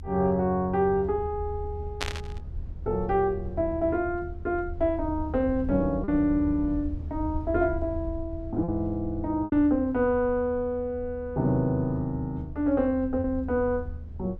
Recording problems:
rumble; below 80 Hz, SNR 11 dB
lost packets; 1.5% of the sound replaced, filled with repeated pitch periods
static burst; at 2 s; peak +2 dB vs average level

